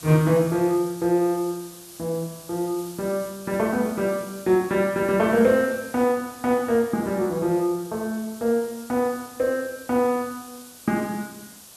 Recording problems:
hiss; SNR 18 dB

